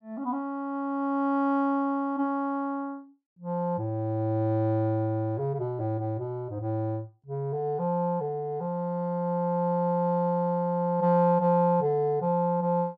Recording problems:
none

